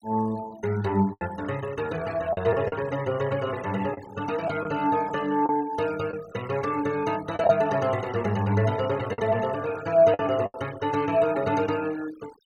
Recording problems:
noise reduction artefacts; signal-to-artefact ratio 18 dB
packet loss; 4% of the sound replaced, filled with the last packet

